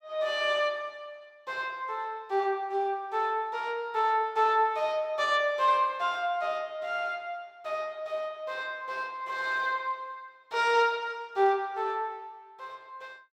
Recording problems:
none

